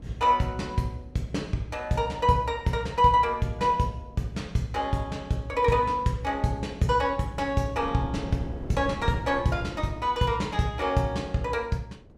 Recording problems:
wind on the microphone; below 360 Hz, SNR 18 dB

